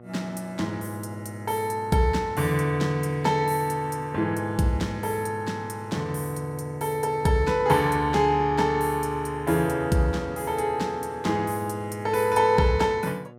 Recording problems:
hum; 60 Hz, harmonics up to 1.3 kHz, SNR 21 dB

